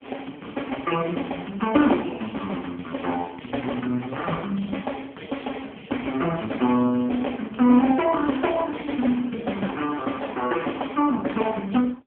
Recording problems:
telephone audio; 170 Hz to 3.3 kHz, AMR-NB

